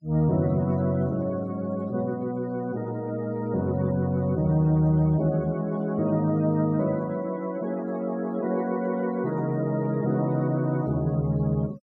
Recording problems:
noise reduction artefacts; signal-to-artefact ratio 23 dB

